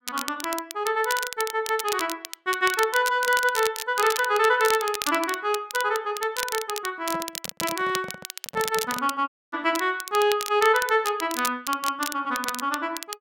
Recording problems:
crackling; vinyl, SNR 8 dB
handling noise; from 7 to 9 s; peak -7 dB vs average level
dropout; at 9.5 s

